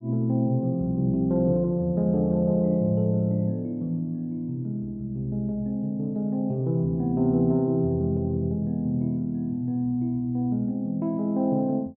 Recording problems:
none

